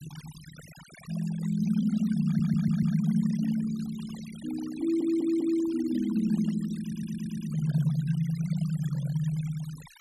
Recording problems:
noise reduction artefacts; signal-to-artefact ratio 20 dB
audio stuttering; at 2.5 s, at 5 s and at 7 s

